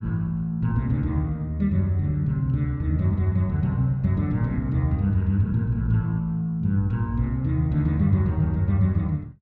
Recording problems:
none

